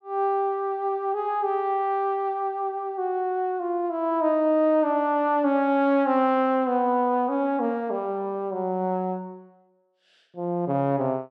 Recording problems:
none

